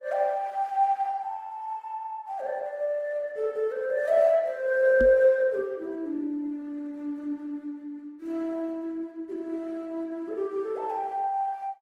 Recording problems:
codec artefacts; Opus, log-spectral distance 2 dB
microphone bump; at 5 s; peak -1 dB vs average level

